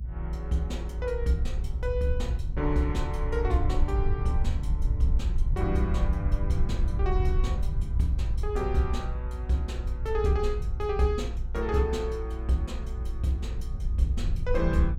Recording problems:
rumble; below 70 Hz, SNR 0 dB

